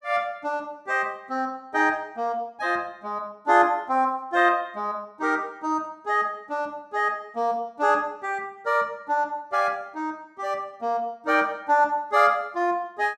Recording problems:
none

